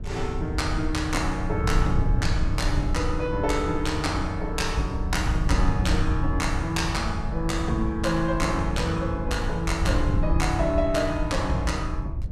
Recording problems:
wind on the microphone; below 96 Hz, SNR 2 dB

